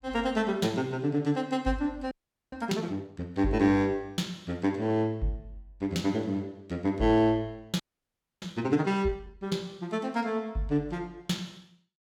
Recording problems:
audio freezing; at 2 s and at 8 s for 0.5 s

